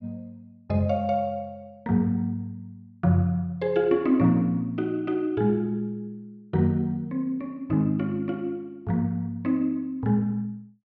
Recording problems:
none

